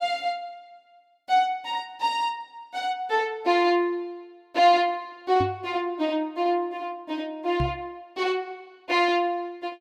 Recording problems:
microphone thump; at 5.5 s and at 7.5 s; peak +1 dB vs average level

